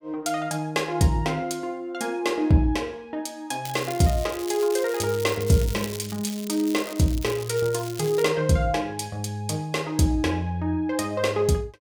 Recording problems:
crackling; from 3.5 to 8.5 s; loose cable, SNR 13 dB

